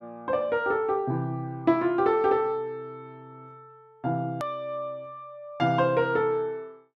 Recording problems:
hard cut with a click; at 4.5 s

